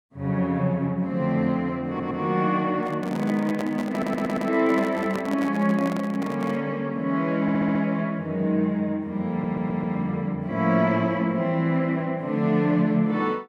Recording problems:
stutter; 4 times, first at 2 s
handling noise; from 3 to 6.5 s; peak -4 dB vs average level

